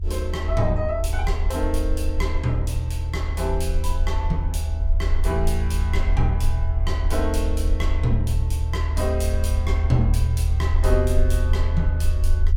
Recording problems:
rumble; below 78 Hz, SNR -3 dB

